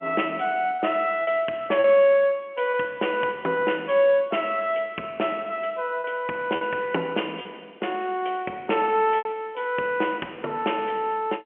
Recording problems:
phone line; 260 Hz to 3.2 kHz, G.711
lost packets; 4% of the sound replaced, filled with repeated pitch periods

